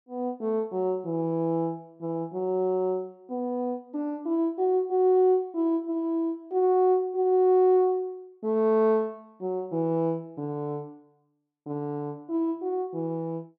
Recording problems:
none

